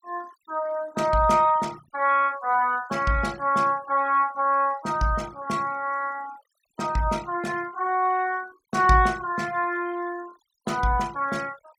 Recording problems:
noise reduction artefacts; signal-to-artefact ratio 23 dB

